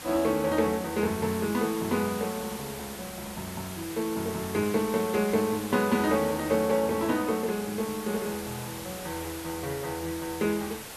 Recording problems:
hiss; slope -2 dB per octave, SNR 10 dB

